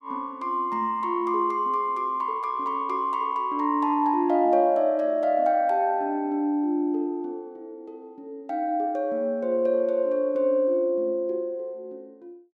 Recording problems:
none

